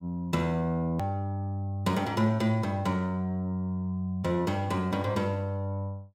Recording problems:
hard cut with a click; at 1 s

